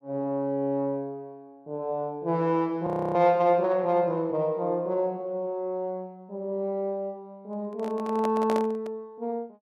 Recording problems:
frozen audio; at 3 s
microphone handling noise; from 7.5 to 9 s; peak -1 dB vs average level

